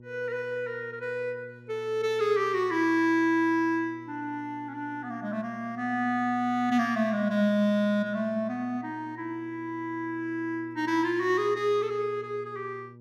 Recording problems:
hum; 60 Hz, harmonics up to 600 Hz, SNR 21 dB

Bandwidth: 15.5 kHz